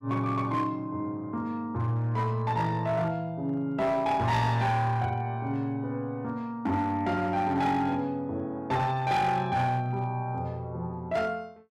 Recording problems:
distortion; hard clipping, signal-to-distortion ratio 11 dB

